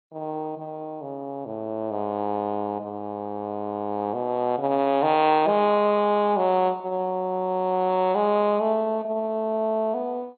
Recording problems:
lossy compression; MP2, log-spectral distance 2 dB, nothing above 4.2 kHz

